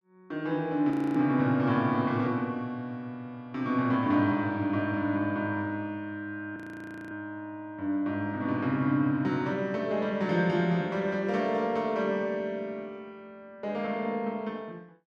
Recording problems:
audio freezing; at 1 s and at 6.5 s for 0.5 s

